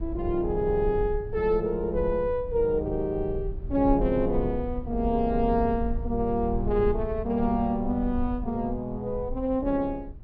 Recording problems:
treble cut off; nothing above 5.5 kHz
rumble; below 70 Hz, SNR 9 dB

